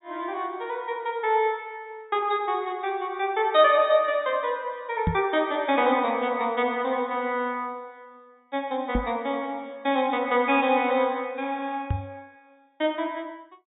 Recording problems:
treble cut off; nothing above 4 kHz
knock on the microphone; at 5 s, at 9 s and at 12 s; peak +4 dB vs average level

